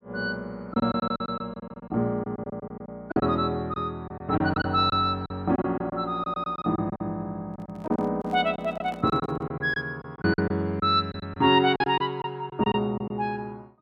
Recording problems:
packet loss; 12% of the sound replaced, filled with silence
handling noise; from 7.5 to 9.5 s; peak -11 dB vs average level

